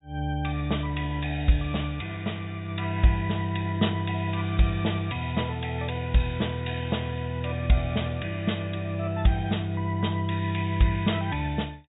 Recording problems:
treble missing; nothing above 4 kHz

